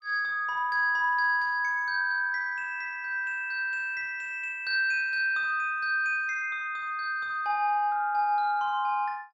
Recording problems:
none

